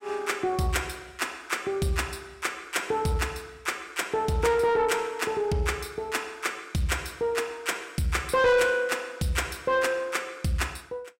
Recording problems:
distorted audio; soft clipping, signal-to-distortion ratio 10 dB

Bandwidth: 16 kHz